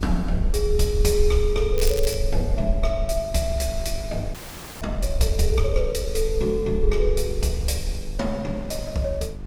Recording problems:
hum; 50 Hz, harmonics up to 900 Hz, SNR 15 dB
low-frequency rumble; below 52 Hz, SNR 3 dB
wind on the microphone; below 780 Hz, SNR 23 dB
crackle; at 2 s; loose cable, SNR 10 dB
audio freezing; at 4.5 s

